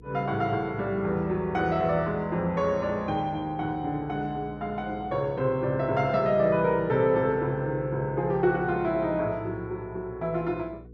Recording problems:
hum; 60 Hz, harmonics up to 480 Hz, SNR 21 dB

